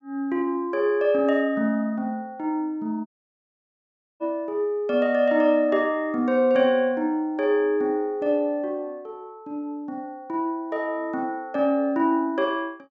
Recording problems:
treble missing; nothing above 8 kHz
audio cutting out; at 3 s for 1 s

